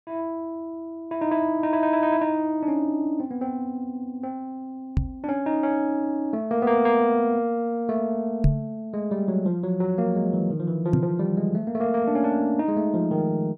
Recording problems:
knock on the microphone; at 5 s, at 8.5 s and at 11 s; peak +8 dB vs average level

